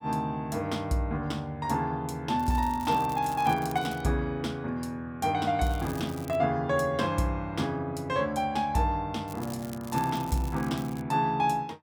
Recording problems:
crackle; from 2.5 to 4 s, at 5.5 s and from 9.5 to 11 s; loose cable, SNR 18 dB

